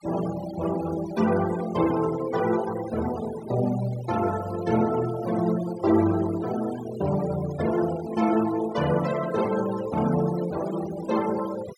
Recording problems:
denoising artefacts; signal-to-artefact ratio 14 dB

